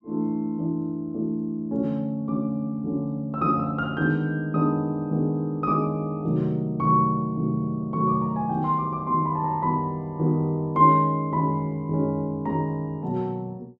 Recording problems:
none

